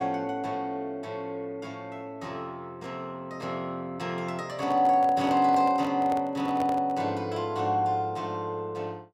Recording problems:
microphone handling noise; from 4.5 to 7 s; peak -3 dB vs average level

